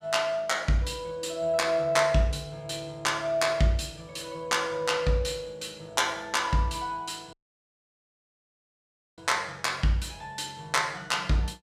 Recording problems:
audio cutting out; at 7.5 s for 2 s

